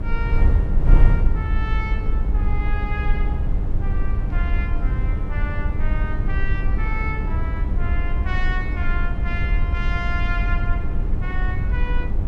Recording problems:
hum; 50 Hz, harmonics up to 1.3 kHz, SNR 6 dB
wind on the microphone; below 66 Hz, SNR -8 dB

